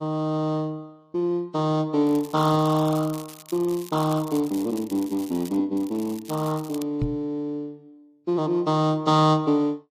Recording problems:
lossy codec; AAC, log-spectral distance 3 dB, nothing above 15.1 kHz
crackling; from 2 to 5.5 s and from 6 to 7 s; loose cable, SNR 20 dB
knock on the microphone; at 7 s; peak +2 dB vs average level

